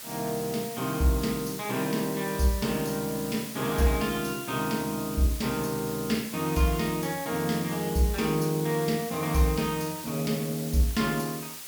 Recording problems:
background hiss; slope +1 dB per octave, SNR 10 dB

